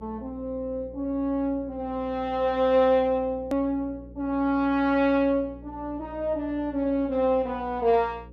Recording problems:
hum; 60 Hz, harmonics up to 540 Hz, SNR 20 dB
hard cut with a click; at 3.5 s

